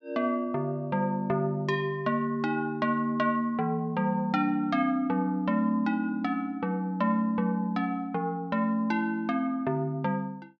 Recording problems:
none

